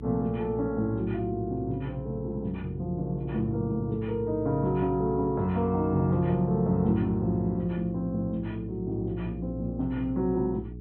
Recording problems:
low-pass filter; nothing above 4 kHz
electrical hum; 60 Hz, harmonics up to 420 Hz, SNR 12 dB

